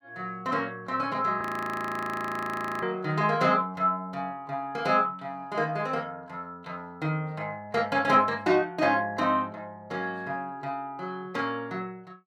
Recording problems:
audio freezing; at 1.5 s for 1.5 s

